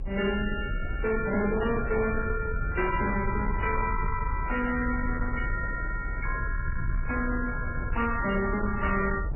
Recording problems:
lossy compression; MP3, log-spectral distance 4 dB, nothing above 2.4 kHz
distortion; soft clipping, signal-to-distortion ratio 11 dB
rumble; below 94 Hz, SNR 5 dB
wind noise; below 550 Hz, SNR 15 dB

